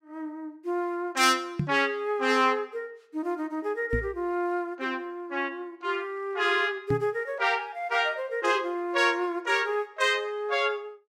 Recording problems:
microphone bump; at 1.5 s, at 4 s and at 7 s; peak +3 dB vs average level

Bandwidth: 16 kHz